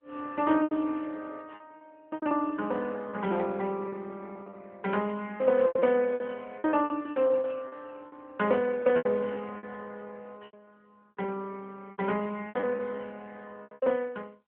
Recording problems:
telephone audio; 220 Hz to 3.4 kHz, AMR-NB
lost packets; 13% of the sound replaced, filled with repeated pitch periods

